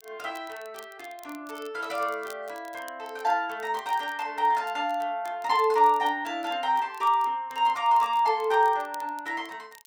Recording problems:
crackle; vinyl, SNR 26 dB

